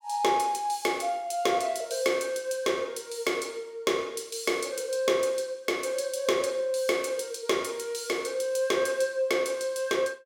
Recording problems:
none

